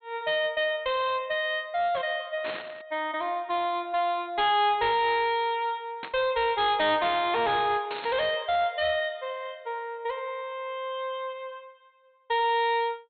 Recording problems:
treble cut off; nothing above 4.3 kHz
distorted audio; hard clipping, uneven, signal-to-distortion ratio 9 dB
burst of static; at 2.5 s, at 6 s and at 8 s; peak -5 dB vs average level

